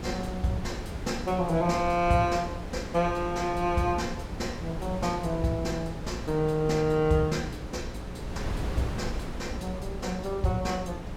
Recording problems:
hum; 60 Hz, harmonics up to 540 Hz, SNR 15 dB
wind on the microphone; below 400 Hz, SNR 9 dB

